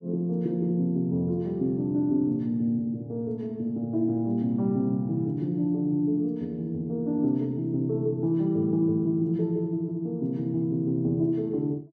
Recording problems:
none

